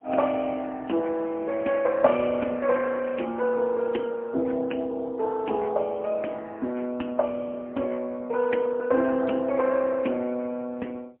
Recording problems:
phone line; 220 Hz to 3 kHz, AMR-NB, then MP3

